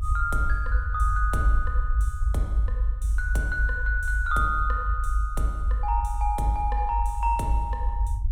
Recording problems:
rumble; below 56 Hz, strongest tone 50 Hz, SNR -1 dB

